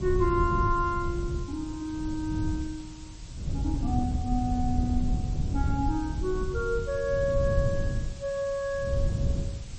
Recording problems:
codec artefacts; MP3, log-spectral distance 4 dB
hiss; slope +1 dB per octave, SNR 19 dB
wind on the microphone; below 120 Hz, SNR 1 dB

